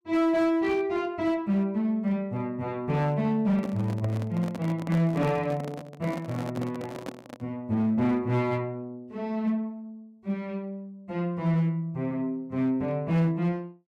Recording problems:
distortion; hard clipping, signal-to-distortion ratio 11 dB
microphone handling noise; from 3.5 to 7.5 s; peak -2 dB vs average level

